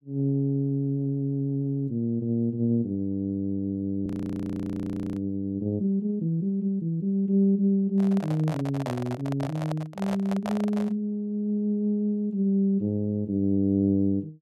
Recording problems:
frozen audio; at 4 s for 1 s
handling noise; from 8 to 11 s; peak -4 dB vs average level

